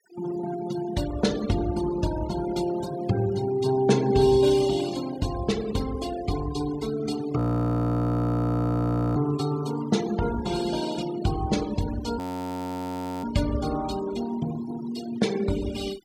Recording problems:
denoising artefacts; signal-to-artefact ratio 15 dB
frozen audio; at 7.5 s for 2 s and at 12 s for 1 s

